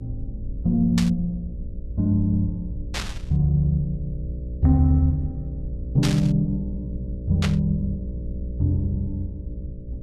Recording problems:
hum; 60 Hz, harmonics up to 600 Hz, SNR 12 dB
low-frequency rumble; below 78 Hz, SNR 15 dB
burst of static; 4 times, first at 1 s; peak -1 dB vs average level

